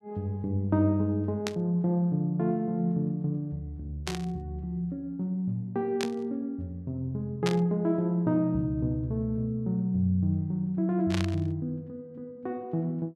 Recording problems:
static burst; 5 times, first at 1.5 s; peak +1 dB vs average level

